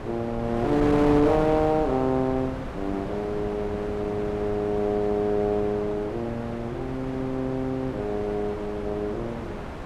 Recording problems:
wind noise; below 860 Hz, SNR 8 dB

